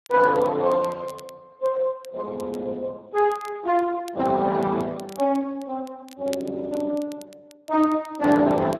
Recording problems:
codec artefacts; Speex, log-spectral distance 3 dB
crackle; vinyl, SNR 25 dB

